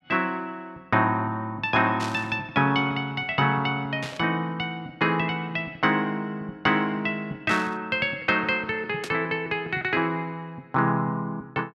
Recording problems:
burst of static; 4 times, first at 2 s; peak -5 dB vs average level

